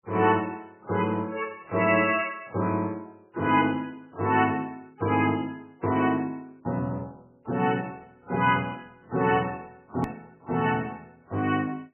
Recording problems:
lossy codec; MP3, log-spectral distance 3 dB, nothing above 2.7 kHz
click at an edit; at 10 s

